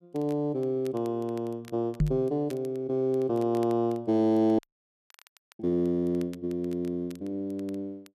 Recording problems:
crackle; vinyl, SNR 28 dB
knock on the microphone; at 2 s; peak +6 dB vs average level
audio cutting out; at 4.5 s for 1 s

